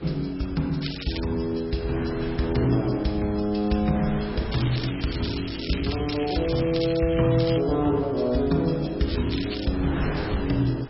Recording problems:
codec artefacts; MP3, log-spectral distance 8 dB, nothing above 5.5 kHz
wind on the microphone; below 1.1 kHz, SNR 14 dB
crackle; at 1 s, from 4.5 to 7.5 s and at 9 s; loose cable, SNR 10 dB

